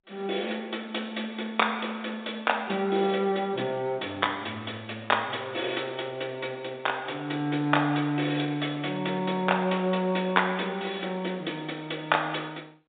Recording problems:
telephone audio; 150 Hz to 3.7 kHz, G.711

